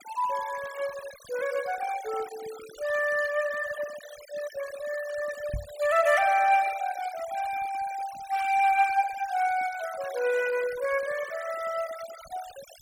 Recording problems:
noise reduction artefacts; signal-to-artefact ratio 16 dB
microphone thump; at 5.5 s; peak -2 dB vs average level

